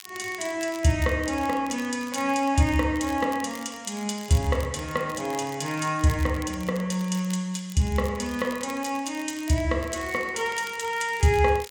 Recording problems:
crackling; vinyl, SNR 19 dB

